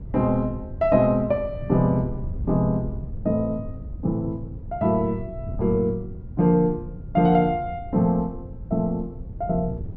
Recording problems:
wind on the microphone; below 130 Hz, SNR 13 dB

